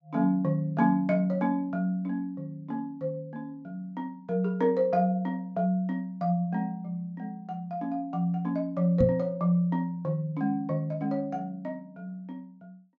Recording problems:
treble missing; nothing above 8 kHz
microphone bump; at 9 s; peak +6 dB vs average level

